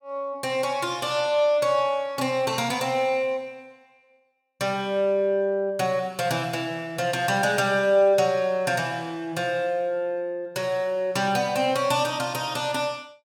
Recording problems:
none

